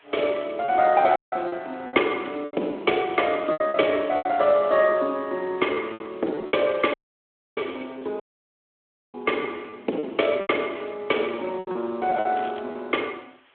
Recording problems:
phone line; 240 Hz to 3.4 kHz, Speex
hiss; SNR 30 dB
packet loss; 10% of the sound replaced, filled with repeated pitch periods
audio cutting out; at 1 s, at 7 s for 0.5 s and at 8 s for 1 s
crackling; at 12 s; loose cable, SNR 22 dB

